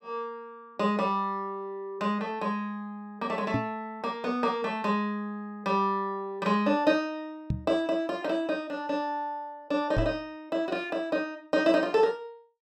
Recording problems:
knock on the microphone; at 3.5 s, at 7.5 s and at 10 s; peak +4 dB vs average level

